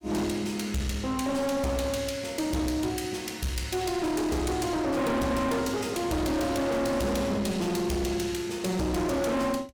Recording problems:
distorted audio; hard clipping, uneven, signal-to-distortion ratio 6 dB

